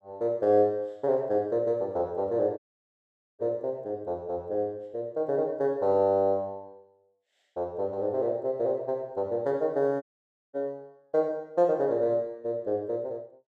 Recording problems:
dropout; at 2.5 s for 1 s and at 10 s for 0.5 s

